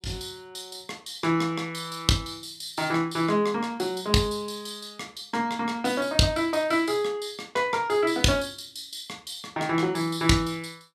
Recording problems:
none

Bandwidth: 14 kHz